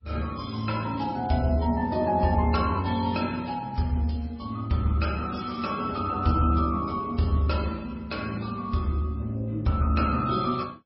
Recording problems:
lossy codec; MP3, log-spectral distance 4 dB, nothing above 5.3 kHz

